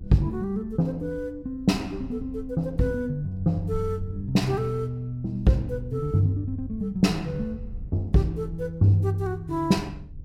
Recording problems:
rumble; below 82 Hz, SNR 16 dB

